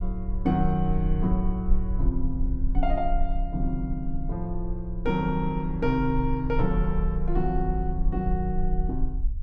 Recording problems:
rumble; below 46 Hz, strongest tone 20 Hz, SNR 3 dB

